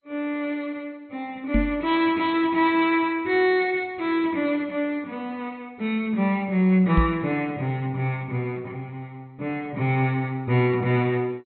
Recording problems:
lossy codec; MP2, log-spectral distance 2 dB, nothing above 4.1 kHz
microphone thump; at 1.5 s and at 7 s; peak +5 dB vs average level

